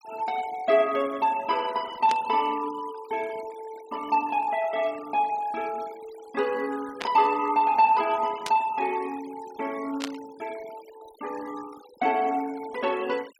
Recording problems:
noise reduction artefacts; signal-to-artefact ratio 21 dB
burst of static; 4 times, first at 2 s; peak -2 dB vs average level

